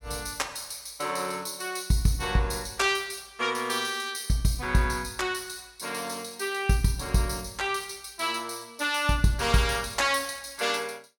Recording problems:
none

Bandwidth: 17 kHz